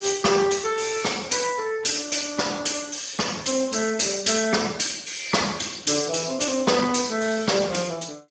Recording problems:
codec artefacts; Speex, log-spectral distance 7 dB, nothing above 7.3 kHz

